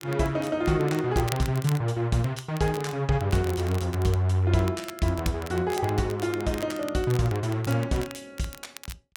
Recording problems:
crackle; vinyl, SNR 16 dB

